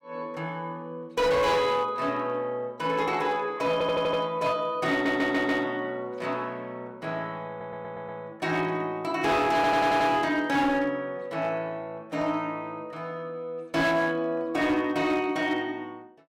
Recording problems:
distorted audio; hard clipping, signal-to-distortion ratio 11 dB
stutter; 4 times, first at 3.5 s

